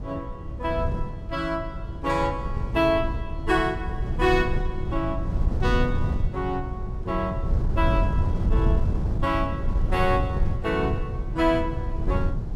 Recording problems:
wind on the microphone; below 110 Hz, SNR 1 dB

